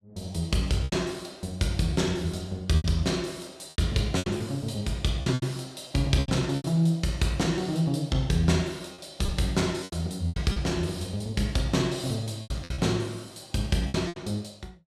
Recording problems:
packet loss; 9% of the sound replaced, filled with repeated pitch periods

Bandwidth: 14.5 kHz